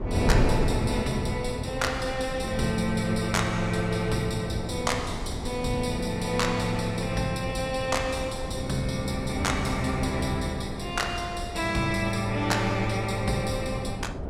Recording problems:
wind on the microphone; below 350 Hz, SNR 6 dB

